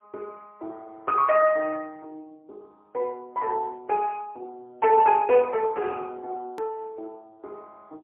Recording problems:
phone line; 320 Hz to 3.4 kHz, AMR-NB, then MP3
click at an edit; at 6.5 s

